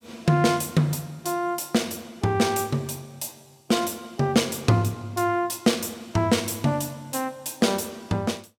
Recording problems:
none

